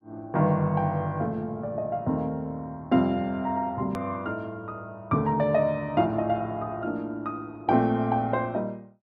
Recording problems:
hard cut with a click; at 4 s

